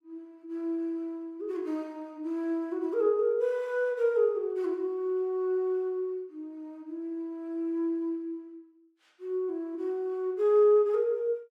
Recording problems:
none

